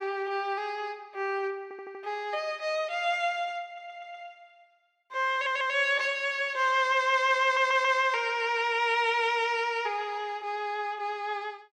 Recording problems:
stutter; 4 times, first at 1.5 s

